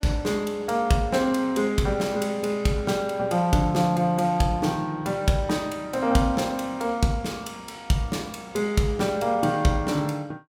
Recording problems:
none

